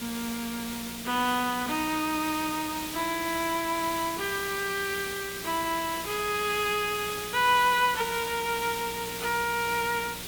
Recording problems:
electrical hum; 60 Hz, harmonics up to 540 Hz, SNR 20 dB
hiss; slope 0 dB per octave, SNR 7 dB

